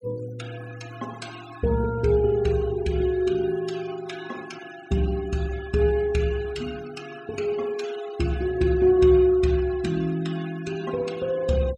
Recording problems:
denoising artefacts; signal-to-artefact ratio 19 dB

